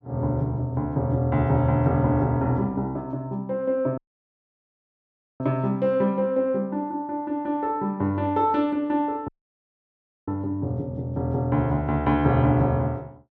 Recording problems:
dropout; at 4 s for 1.5 s and at 9.5 s for 1 s

